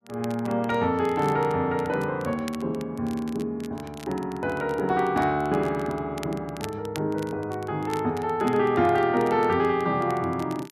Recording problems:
crackle; vinyl, SNR 21 dB

